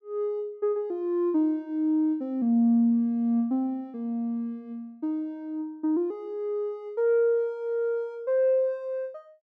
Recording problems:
none

